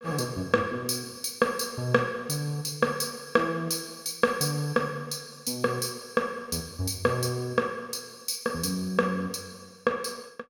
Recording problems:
none

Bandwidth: 17 kHz